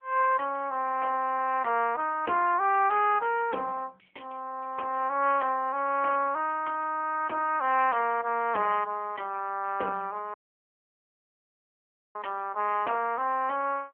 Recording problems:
telephone audio; 370 Hz to 3.1 kHz, AMR-NB
audio cutting out; at 10 s for 2 s

